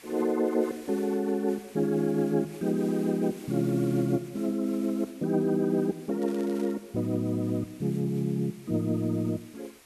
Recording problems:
background hiss; SNR 23 dB
crackling; at 6 s; loose cable, SNR 24 dB

